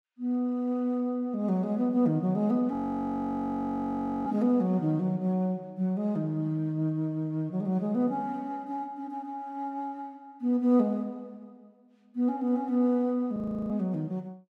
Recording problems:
audio freezing; at 2.5 s for 1.5 s and at 13 s

